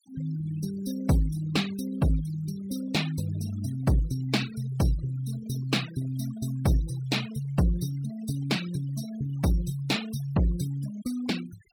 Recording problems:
denoising artefacts; signal-to-artefact ratio 15 dB

